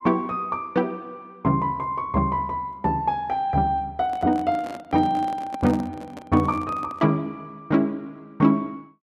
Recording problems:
handling noise; from 4 to 7 s; peak -5 dB vs average level

